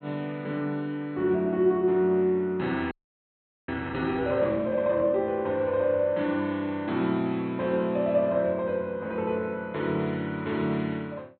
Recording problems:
treble cut off; nothing above 4.2 kHz
audio freezing; at 3 s for 1 s

